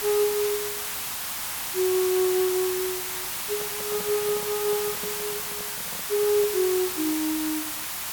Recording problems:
hiss; SNR 2 dB
microphone handling noise; from 3.5 to 6.5 s; peak -9 dB vs average level

